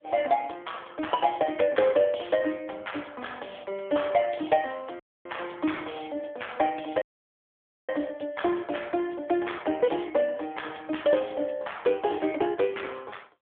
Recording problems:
telephone audio; 220 Hz to 3.4 kHz, AMR-NB
dropout; at 5 s and at 7 s for 1 s

